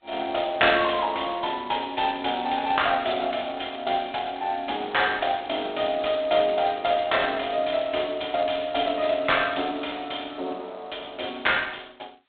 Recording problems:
telephone audio; 240 Hz to 4 kHz, G.726

